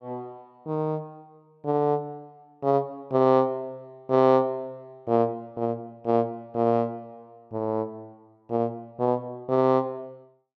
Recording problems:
none

